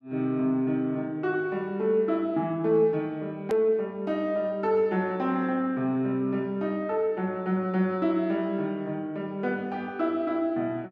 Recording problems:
edit click; at 3.5 s

